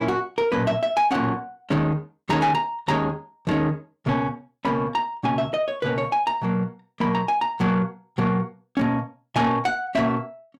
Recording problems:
distorted audio; soft clipping, signal-to-distortion ratio 12 dB

